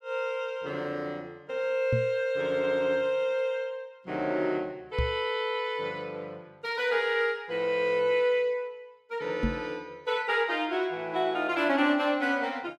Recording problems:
knock on the microphone; at 2 s, at 5 s and at 9.5 s; peak +4 dB vs average level

